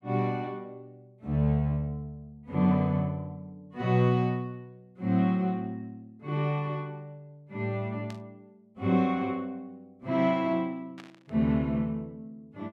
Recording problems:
burst of static; at 8 s and at 11 s; peak -14 dB vs average level

